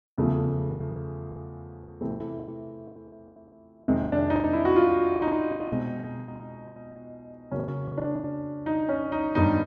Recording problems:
lost packets; 16% of the sound replaced, filled with the last packet

